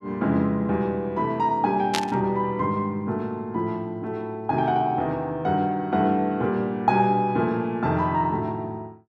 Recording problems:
burst of static; at 2 s; peak +4 dB vs average level

